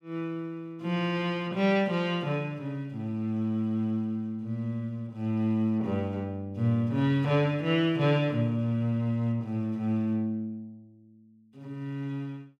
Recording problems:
none

